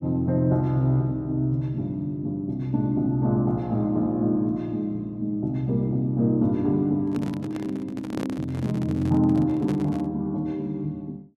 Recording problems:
microphone handling noise; from 7 to 10 s; peak -3 dB vs average level

